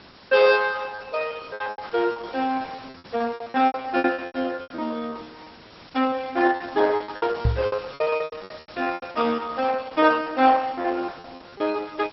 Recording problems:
treble missing; nothing above 5.2 kHz
lossy codec; Opus, log-spectral distance 10 dB
hiss; slope -2 dB per octave, SNR 22 dB
packet loss; 18% of the sound replaced, filled with repeated pitch periods
microphone thump; at 7.5 s; peak +5 dB vs average level

